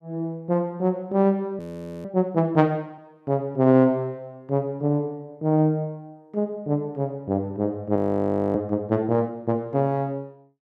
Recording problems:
audio freezing; at 1.5 s and at 8 s for 0.5 s

